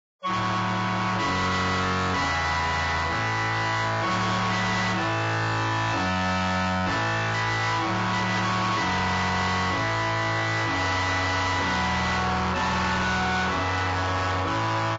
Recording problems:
lossy codec; Vorbis, log-spectral distance 4 dB, nothing above 7.3 kHz
distorted audio; hard clipping, signal-to-distortion ratio 6 dB

